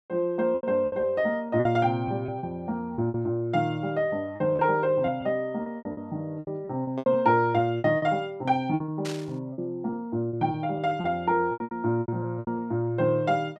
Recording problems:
lost packets; 13% of the sound replaced, filled with repeated pitch periods
burst of static; at 9 s; peak -6 dB vs average level

